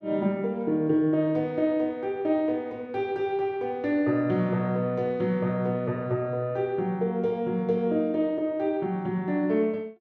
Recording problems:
none

